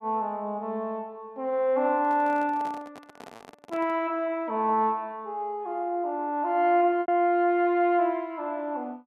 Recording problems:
lost packets; 1% of the sound replaced, filled with repeated pitch periods
microphone handling noise; from 2 to 4 s; peak -12 dB vs average level

